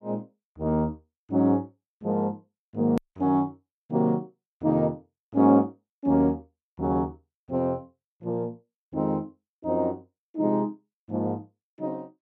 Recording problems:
click at an edit; at 3 s

